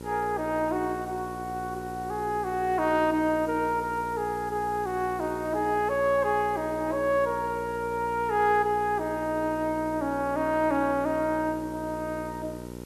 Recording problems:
electrical hum; 60 Hz, harmonics up to 1.5 kHz, SNR 13 dB
hiss; slope 0 dB per octave, SNR 24 dB

